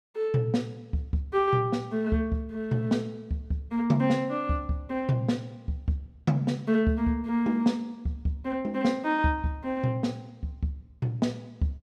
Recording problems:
none

